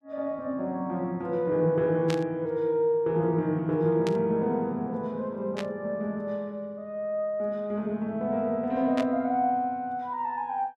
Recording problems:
burst of static; 4 times, first at 2 s; peak -3 dB vs average level

